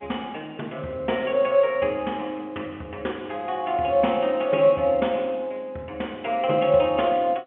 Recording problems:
phone line; 240 Hz to 3.3 kHz, G.711

